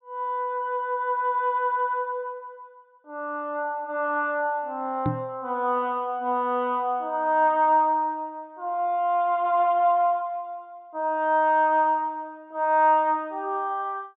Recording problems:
treble missing; nothing above 4 kHz
microphone thump; at 5 s; peak +2 dB vs average level

